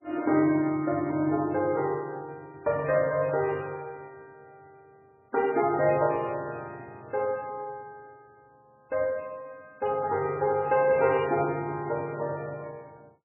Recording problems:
lossy compression; MP3, log-spectral distance 2 dB, nothing above 2.4 kHz

